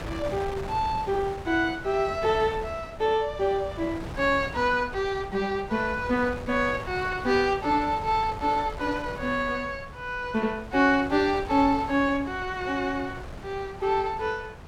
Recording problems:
wind on the microphone; below 810 Hz, SNR 13 dB

